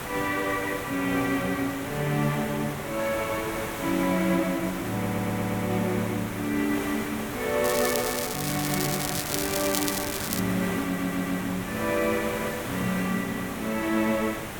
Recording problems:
background hiss; SNR 6 dB
stutter; at 5 s and at 11 s
crackling; from 7.5 to 10 s; loose cable, SNR 2 dB

